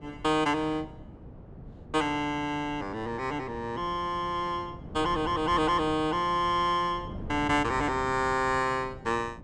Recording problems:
wind on the microphone; below 270 Hz, SNR 15 dB

